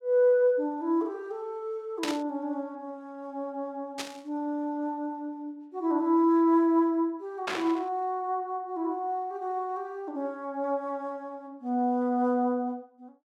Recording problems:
static burst; at 2 s, at 4 s and at 7.5 s; peak +1 dB vs average level

